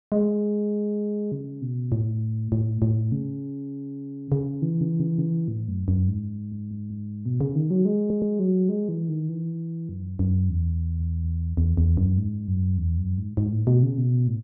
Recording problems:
stutter; 4 times, first at 4.5 s

